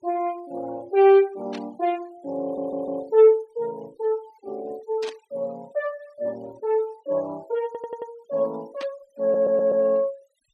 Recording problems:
noise reduction artefacts; signal-to-artefact ratio 28 dB
burst of static; at 1.5 s, at 5 s and at 9 s; peak -9 dB vs average level
audio stuttering; at 2.5 s, at 7.5 s and at 9 s

